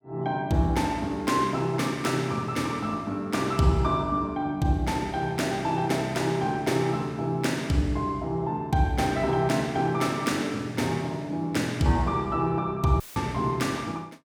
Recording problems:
audio cutting out; at 13 s; filled with static

